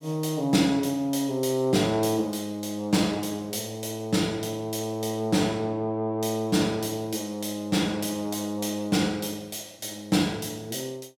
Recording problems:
none

